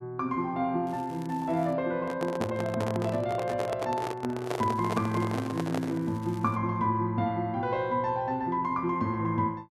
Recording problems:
crackling; at 1 s and from 4.5 to 6.5 s; loose cable, SNR 25 dB
handling noise; from 2 to 6 s; peak +1 dB vs average level

